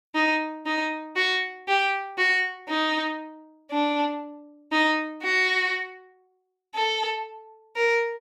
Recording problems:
none

